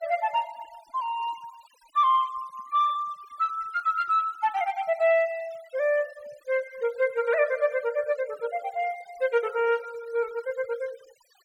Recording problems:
noise reduction artefacts; signal-to-artefact ratio 22 dB

